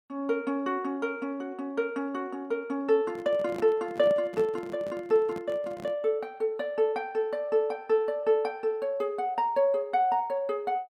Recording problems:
handling noise; from 3 to 6 s; peak -6 dB vs average level

